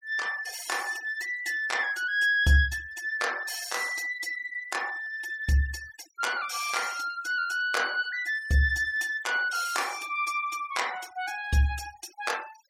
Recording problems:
denoising artefacts; signal-to-artefact ratio 18 dB

